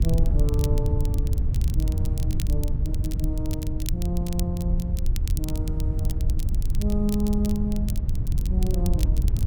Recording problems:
wind noise; below 86 Hz, SNR -5 dB
crackling; vinyl, SNR 11 dB

